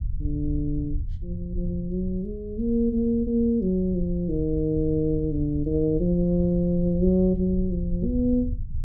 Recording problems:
low-frequency rumble; below 80 Hz, SNR 9 dB

